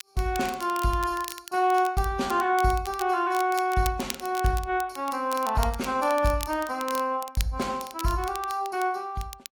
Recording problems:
lossy codec; AAC, log-spectral distance 2 dB, nothing above 14.7 kHz
crackling; vinyl, SNR 14 dB

